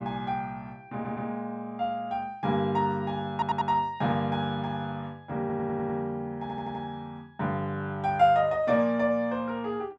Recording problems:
audio stuttering; 4 times, first at 1 s

